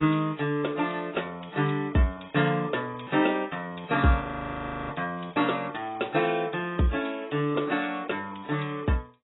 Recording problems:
lossy compression; AAC, log-spectral distance 6 dB, nothing above 3.8 kHz
audio freezing; at 4 s for 0.5 s

